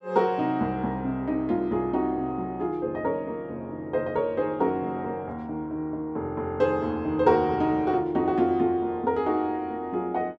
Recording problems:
none

